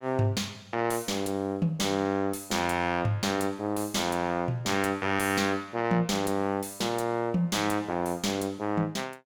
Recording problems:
distorted audio; soft clipping, signal-to-distortion ratio 11 dB

